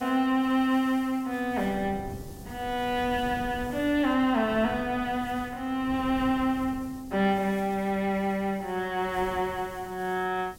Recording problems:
background hiss; SNR 25 dB
wind noise; below 270 Hz, SNR 18 dB

